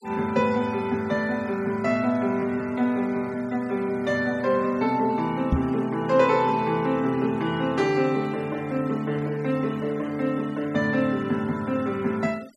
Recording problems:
denoising artefacts; signal-to-artefact ratio 22 dB
knock on the microphone; at 5.5 s; peak +5 dB vs average level

